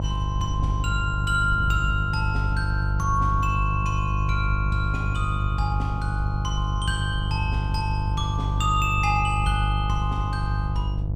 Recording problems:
mains hum; 50 Hz, harmonics up to 500 Hz, SNR -1 dB
wind noise; below 110 Hz, SNR 8 dB

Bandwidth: 15 kHz